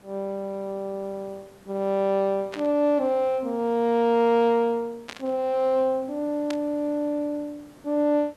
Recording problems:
background hiss; slope -6 dB per octave, SNR 27 dB
burst of static; at 2.5 s, at 5 s and at 6.5 s; peak -7 dB vs average level

